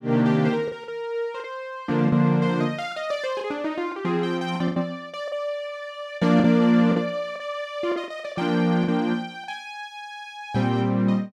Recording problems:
packet loss; 7% of the sound replaced, filled with the last packet

